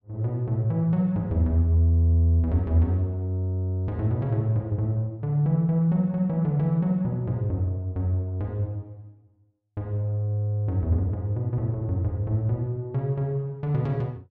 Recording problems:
none

